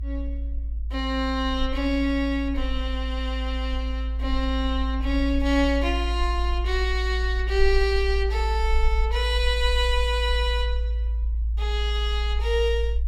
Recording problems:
rumble; below 58 Hz, strongest tone 56 Hz, SNR 1 dB

